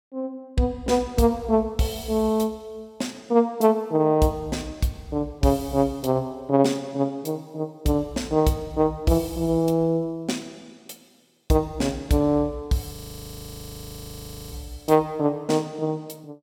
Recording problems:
frozen audio; at 13 s for 1.5 s

